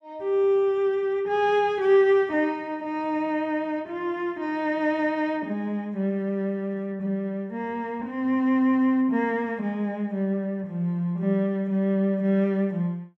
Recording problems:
none

